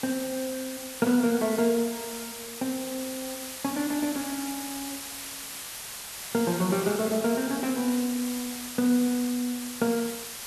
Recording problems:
background hiss; slope +1 dB per octave, SNR 8 dB

